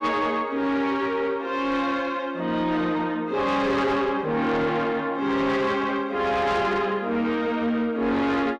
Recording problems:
distortion; soft clipping, signal-to-distortion ratio 10 dB

